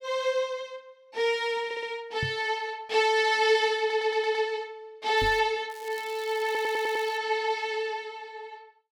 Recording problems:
audio stuttering; at 1.5 s, at 4 s and at 6.5 s
knock on the microphone; at 2 s and at 5 s; peak -2 dB vs average level
crackling; at 5 s and from 5.5 to 7 s; loose cable, SNR 21 dB

